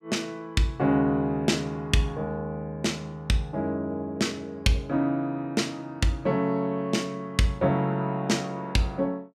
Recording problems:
none

